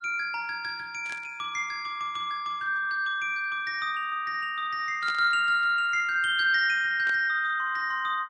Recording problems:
lossy compression; Vorbis, log-spectral distance 2 dB, nothing above 8.7 kHz
static burst; at 1 s, at 5 s and at 7 s; peak -10 dB vs average level

